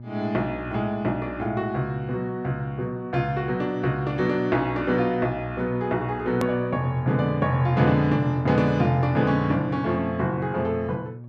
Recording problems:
mains hum; 60 Hz, harmonics up to 600 Hz, SNR 13 dB
click at an edit; at 6.5 s

